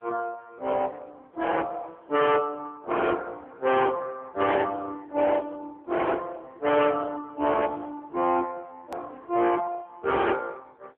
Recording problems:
telephone audio; 260 Hz to 3.5 kHz, AMR-NB
distorted audio; hard clipping, signal-to-distortion ratio 8 dB
click at an edit; at 9 s

